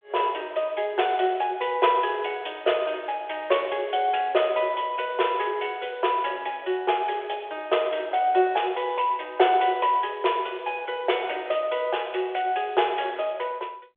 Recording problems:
phone line; 320 Hz to 3.5 kHz, G.726

